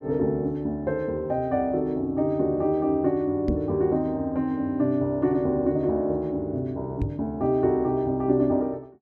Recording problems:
microphone thump; at 3.5 s and at 7 s; peak +2 dB vs average level

